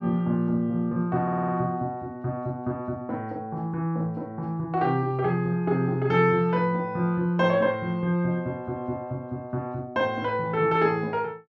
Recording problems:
stutter; at 1 s

